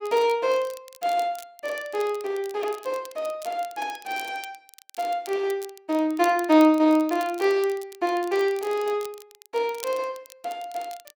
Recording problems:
crackle; vinyl, SNR 20 dB

